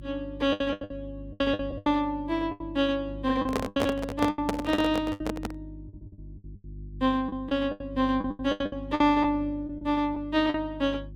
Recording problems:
electrical hum; 50 Hz, harmonics up to 350 Hz, SNR 15 dB
lost packets; 14% of the sound replaced, filled with the last packet
handling noise; from 3.5 to 5.5 s; peak +3 dB vs average level

